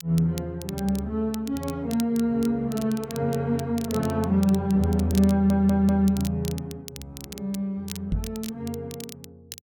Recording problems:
crackle; vinyl, SNR 17 dB
stutter; at 5.5 s
microphone thump; at 8 s; peak +1 dB vs average level

